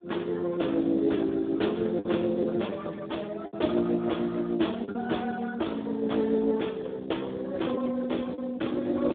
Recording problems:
phone line; 190 Hz to 3.6 kHz, Speex
lost packets; 4% of the sound replaced, filled with the last packet

